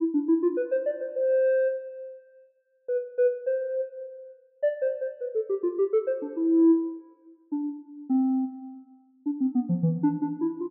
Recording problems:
none

